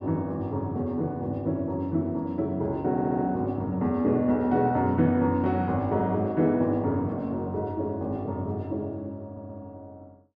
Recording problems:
audio stuttering; at 3 s and at 9 s

